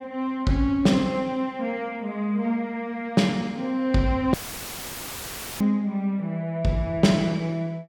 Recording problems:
dropout; at 4.5 s for 1.5 s; filled with static

